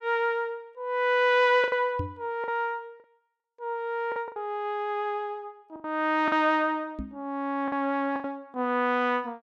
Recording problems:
packet loss; 6% of the sound replaced, filled with the last packet
knock on the microphone; at 2 s and at 7 s; peak -2 dB vs average level

